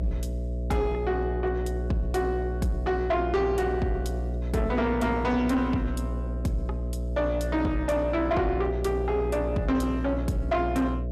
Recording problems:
distortion; soft clipping, signal-to-distortion ratio 11 dB
electrical hum; 60 Hz, harmonics up to 660 Hz, SNR 4 dB

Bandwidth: 15 kHz